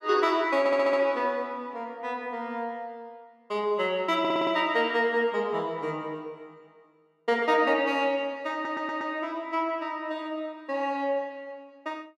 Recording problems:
audio stuttering; at 0.5 s, at 4 s and at 8.5 s

